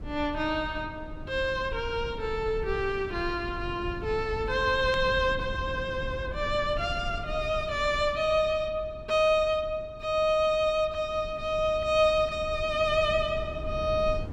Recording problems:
rumble; below 130 Hz, SNR 13 dB
burst of static; at 5 s; peak -8 dB vs average level

